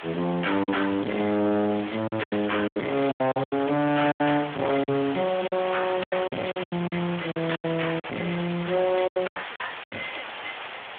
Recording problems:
phone line; 170 Hz to 3.4 kHz, Speex
distorted audio; hard clipping, signal-to-distortion ratio 5 dB
hiss; SNR 10 dB
lost packets; 13% of the sound replaced, filled with silence
crackle; from 1.5 to 2.5 s, at 5 s and from 8.5 to 10 s; loose cable, SNR 22 dB

